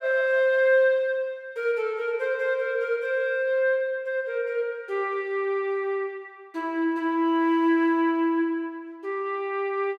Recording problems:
none

